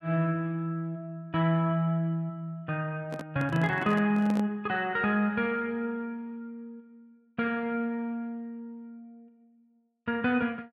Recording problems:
handling noise; from 3 to 4.5 s; peak -4 dB vs average level

